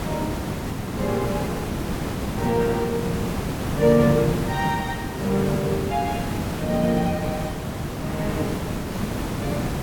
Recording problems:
hiss; slope -6 dB per octave, SNR 3 dB

